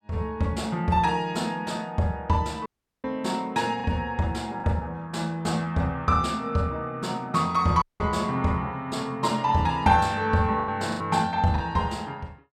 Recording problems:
lost packets; 2% of the sound replaced, filled with the last packet
dropout; at 2.5 s and at 8 s

